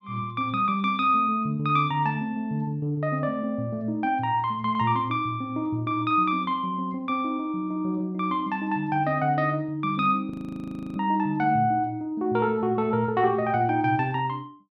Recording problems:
frozen audio; at 10 s for 0.5 s

